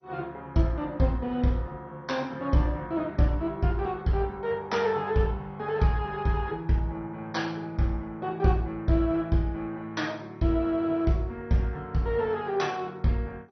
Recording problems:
lossy codec; MP2, log-spectral distance 2 dB, nothing above 6 kHz

